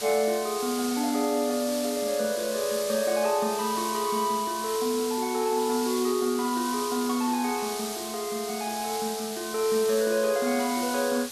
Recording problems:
background hiss; slope +1 dB per octave, SNR 7 dB

